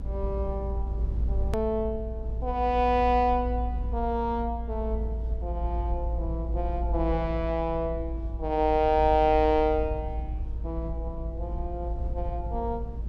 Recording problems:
low-frequency rumble; below 58 Hz, strongest tone 56 Hz, SNR 5 dB
edit click; at 1.5 s

